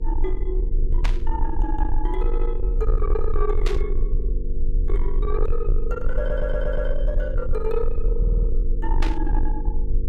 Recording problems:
distortion; soft clipping, signal-to-distortion ratio 10 dB
hum; 50 Hz, harmonics up to 500 Hz, SNR 8 dB
low-frequency rumble; below 40 Hz, strongest tone 22 Hz, SNR -3 dB
static burst; at 1 s, at 3.5 s and at 9 s; peak +3 dB vs average level
stutter; at 2.5 s, at 6 s and at 8 s

